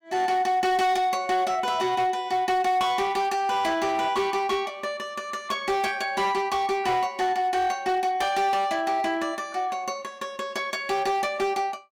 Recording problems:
distortion; hard clipping, signal-to-distortion ratio 11 dB

